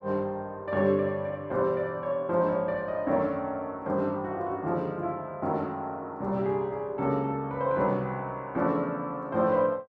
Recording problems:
none

